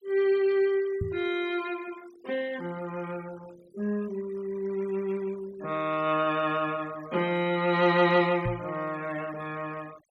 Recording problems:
noise reduction artefacts; signal-to-artefact ratio 21 dB
microphone thump; at 1 s and at 8.5 s; peak 0 dB vs average level

